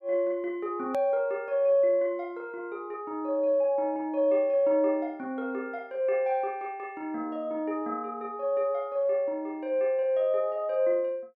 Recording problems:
hard cut with a click; at 1 s

